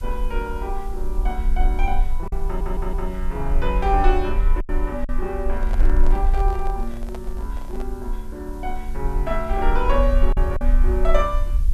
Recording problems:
hiss; slope +1 dB per octave, SNR 25 dB
low-frequency rumble; below 42 Hz, strongest tone 20 Hz, SNR -2 dB
lost packets; 2% of the sound replaced, filled with silence
stutter; at 2.5 s
microphone handling noise; from 5.5 to 8 s; peak -4 dB vs average level

